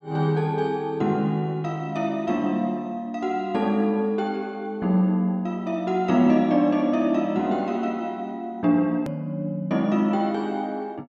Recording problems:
edit click; at 9 s

